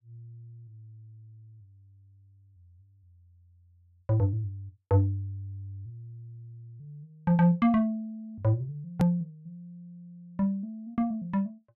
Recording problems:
click at an edit; at 9 s

